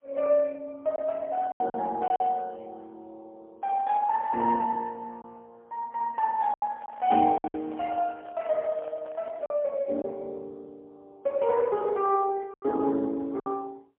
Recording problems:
phone line; 240 Hz to 3 kHz, AMR-NB, then MP3
lost packets; 5% of the sound replaced, filled with silence
handling noise; from 6.5 to 9.5 s; peak -15 dB vs average level

